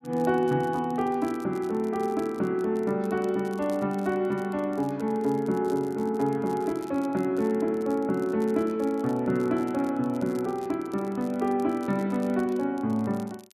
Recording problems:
crackle; vinyl, SNR 26 dB

